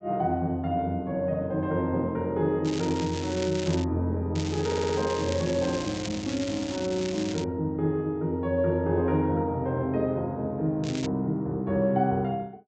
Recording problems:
treble cut off; nothing above 8 kHz
crackling; from 2.5 to 4 s, from 4.5 to 7.5 s and at 11 s; loose cable, SNR 12 dB
stutter; at 4.5 s

